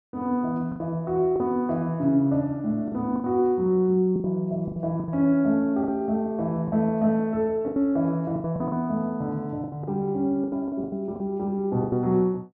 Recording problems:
lost packets; 10% of the sound replaced, filled with the last packet

